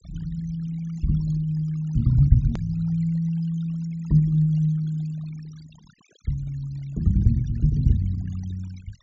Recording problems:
low-pass filter; nothing above 7.2 kHz
noise reduction artefacts; signal-to-artefact ratio 24 dB
click at an edit; at 2.5 s

